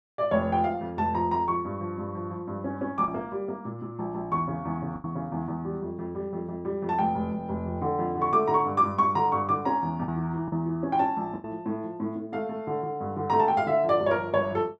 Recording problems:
packet loss; 1.9% of the sound replaced, filled with the last packet

